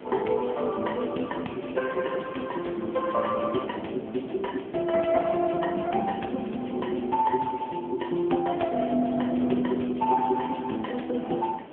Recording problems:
phone line; 170 Hz to 3.4 kHz, AMR-NB
hiss; SNR 15 dB

